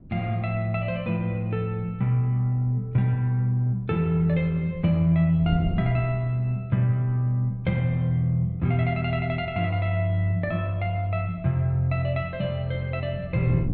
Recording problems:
wind noise; below 180 Hz, SNR 17 dB

